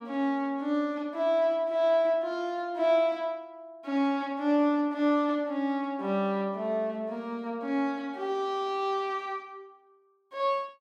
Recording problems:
none

